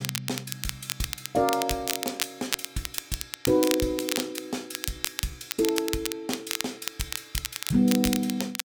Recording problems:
crackling; vinyl, SNR 3 dB

